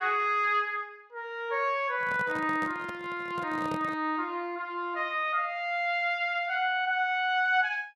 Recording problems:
microphone handling noise; from 2 to 4 s; peak -5 dB vs average level

